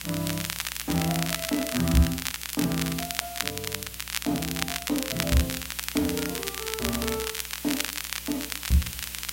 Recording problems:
hum; 60 Hz, harmonics up to 540 Hz, SNR 20 dB
hiss; slope +3 dB per octave, SNR 8 dB
crackle; vinyl, SNR 2 dB

